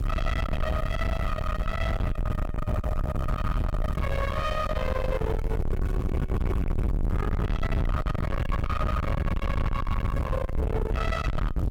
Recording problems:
distortion; soft clipping, signal-to-distortion ratio 7 dB
hiss; slope -2 dB per octave, SNR 23 dB
wind on the microphone; below 440 Hz, SNR -1 dB

